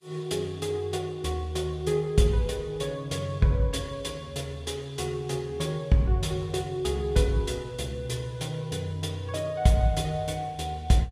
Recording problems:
lossy codec; Vorbis, log-spectral distance 2 dB, nothing above 14.7 kHz

